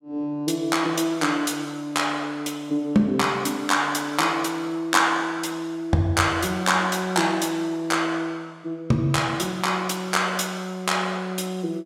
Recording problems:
none

